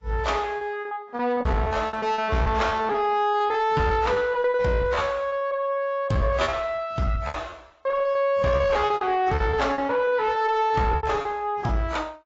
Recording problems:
codec artefacts; AAC, log-spectral distance 2 dB, nothing above 7.3 kHz
distorted audio; soft clipping, signal-to-distortion ratio 12 dB
packet loss; 19% of the sound replaced, filled with repeated pitch periods

